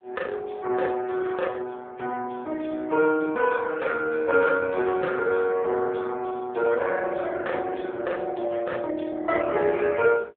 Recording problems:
telephone audio; 280 Hz to 2.8 kHz, AMR-NB

